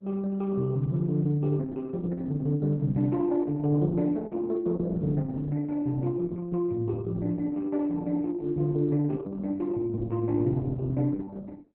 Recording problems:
codec artefacts; Opus, log-spectral distance 2 dB

